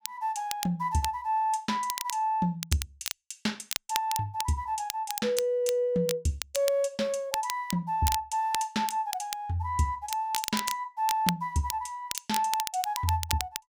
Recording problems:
crackling; vinyl, SNR 7 dB

